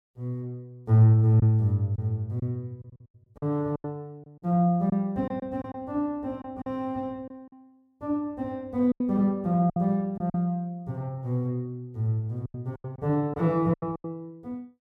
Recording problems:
packet loss; 7% of the sound replaced, filled with silence

